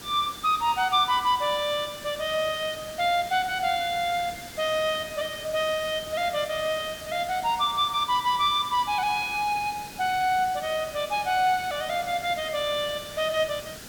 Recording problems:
background hiss; SNR 15 dB

